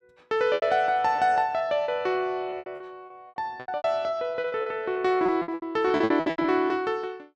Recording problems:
lost packets; 18% of the sound replaced, filled with repeated pitch periods

